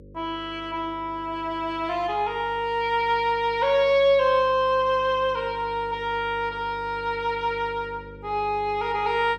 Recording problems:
hum; 50 Hz, harmonics up to 550 Hz, SNR 21 dB

